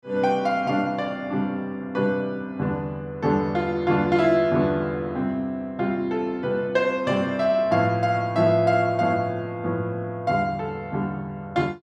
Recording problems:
none

